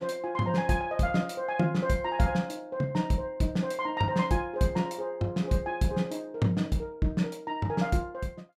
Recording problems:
none

